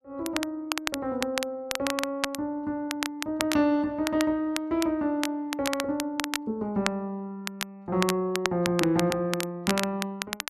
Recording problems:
crackling; vinyl, SNR 5 dB

